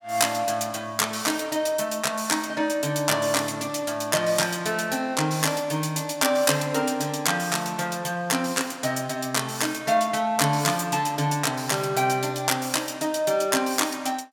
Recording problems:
none

